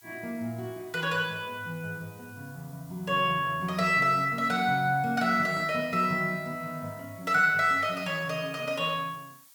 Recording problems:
background hiss; SNR 25 dB

